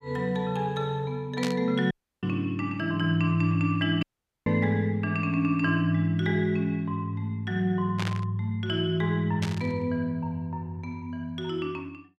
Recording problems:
static burst; at 1.5 s, at 8 s and at 9.5 s; peak -2 dB vs average level
audio cutting out; at 2 s and at 4 s

